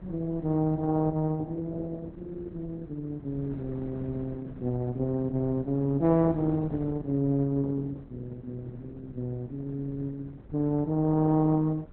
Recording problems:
lossy codec; Opus, log-spectral distance 2 dB
wind noise; below 270 Hz, SNR 18 dB

